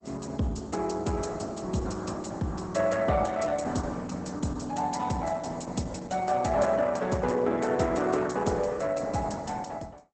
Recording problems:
lossy codec; Opus, log-spectral distance 5 dB, nothing above 8 kHz

